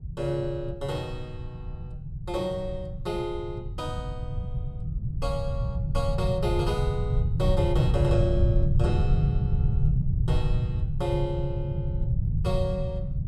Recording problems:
rumble; below 140 Hz, SNR -3 dB

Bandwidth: 14.5 kHz